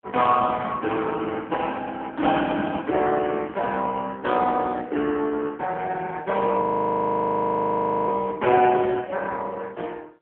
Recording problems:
phone line; 260 Hz to 3.4 kHz, AMR-NB
frozen audio; at 6.5 s for 1.5 s

